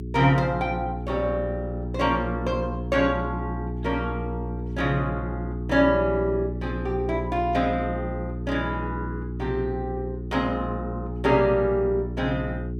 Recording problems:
hum; 60 Hz, harmonics up to 420 Hz, SNR 6 dB

